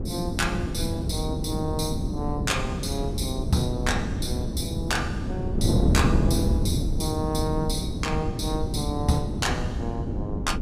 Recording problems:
wind noise; below 230 Hz, SNR -1 dB

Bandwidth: 15.5 kHz